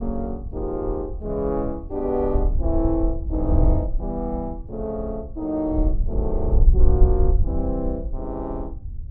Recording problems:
wind on the microphone; below 64 Hz, SNR -2 dB

